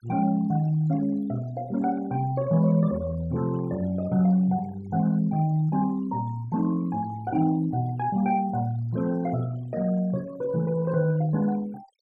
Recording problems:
denoising artefacts; signal-to-artefact ratio 23 dB

